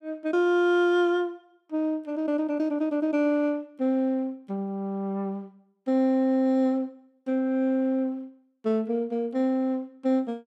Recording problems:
none

